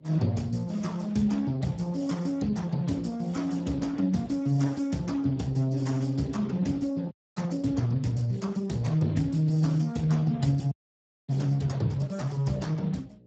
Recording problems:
lossy codec; Speex, then Speex, log-spectral distance 4 dB, nothing above 7.3 kHz
hum; 60 Hz, harmonics up to 600 Hz, SNR 28 dB
frozen audio; at 7 s and at 11 s for 0.5 s

